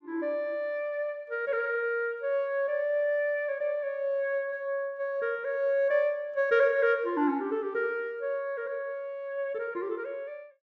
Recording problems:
none

